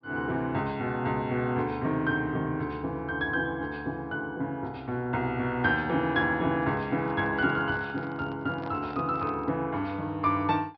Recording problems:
treble missing; nothing above 5.5 kHz
microphone handling noise; from 6.5 to 9.5 s; peak -11 dB vs average level

